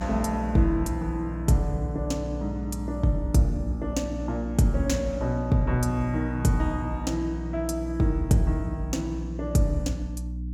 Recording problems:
hum; 60 Hz, harmonics up to 300 Hz, SNR 7 dB

